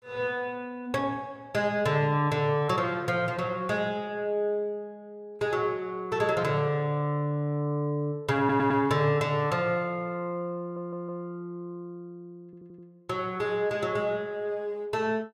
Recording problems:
audio stuttering; at 8.5 s, at 11 s and at 12 s

